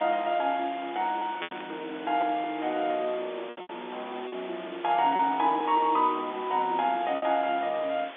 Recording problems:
telephone audio; 220 Hz to 3.7 kHz, G.711
hiss; SNR 15 dB
lost packets; 5% of the sound replaced, filled with repeated pitch periods
static burst; at 1.5 s; peak -2 dB vs average level

